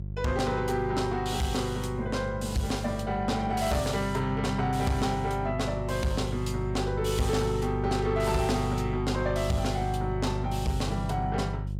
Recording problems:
distortion; soft clipping, signal-to-distortion ratio 12 dB
mains hum; 50 Hz, harmonics up to 400 Hz, SNR 5 dB

